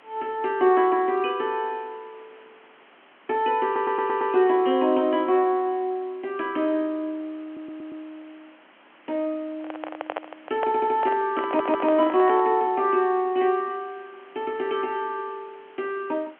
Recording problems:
phone line; 190 Hz to 3.4 kHz, G.711
hiss; SNR 28 dB
stutter; 4 times, first at 3.5 s
handling noise; from 9.5 to 13 s; peak -2 dB vs average level

